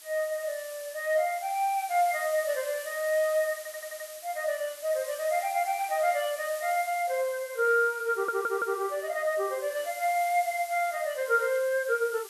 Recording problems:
lossy compression; Vorbis, log-spectral distance 8 dB, nothing above 12.7 kHz
background hiss; slope +3 dB per octave, SNR 15 dB
stutter; at 3.5 s and at 8 s

